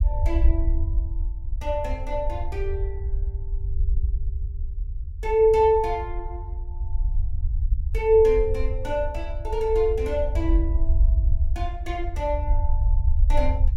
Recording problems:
rumble; below 64 Hz, SNR 3 dB

